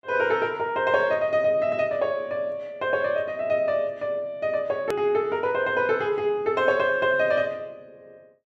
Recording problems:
hard cut with a click; at 5 s

